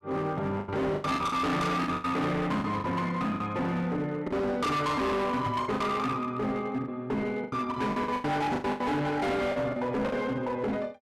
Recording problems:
distortion; hard clipping, signal-to-distortion ratio 7 dB
packet loss; 11% of the sound replaced, filled with the last packet
microphone bump; at 5.5 s; peak -2 dB vs average level

